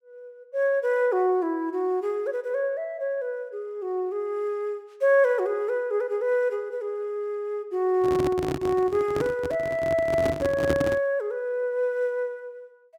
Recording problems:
microphone handling noise; from 8 to 11 s; peak +3 dB vs average level

